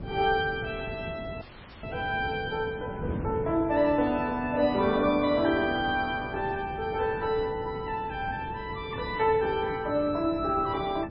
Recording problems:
codec artefacts; MP3, log-spectral distance 2 dB, nothing above 4.8 kHz
wind on the microphone; below 330 Hz, SNR 12 dB
audio cutting out; at 1.5 s

